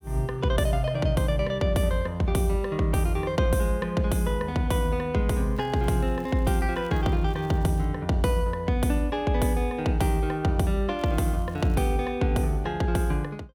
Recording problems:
crackling; from 5.5 to 8 s and at 11 s; loose cable, SNR 29 dB

